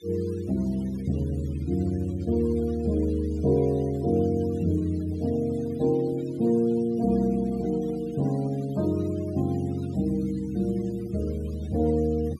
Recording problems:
noise reduction artefacts; signal-to-artefact ratio 23 dB

